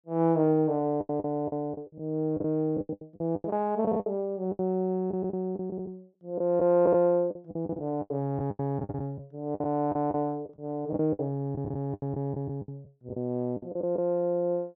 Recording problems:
packet loss; 14% of the sound replaced, filled with the last packet

